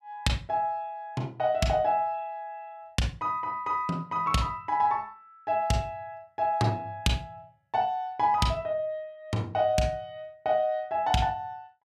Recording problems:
none

